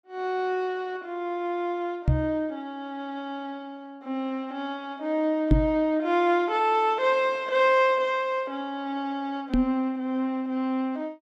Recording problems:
microphone bump; at 2 s, at 5.5 s and at 9.5 s; peak +9 dB vs average level

